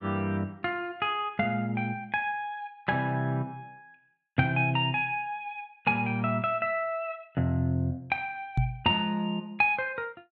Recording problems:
microphone thump; at 8.5 s; peak +6 dB vs average level

